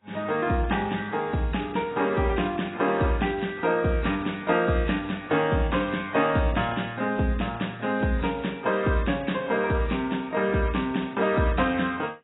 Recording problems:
codec artefacts; AAC, log-spectral distance 5 dB, nothing above 3.8 kHz

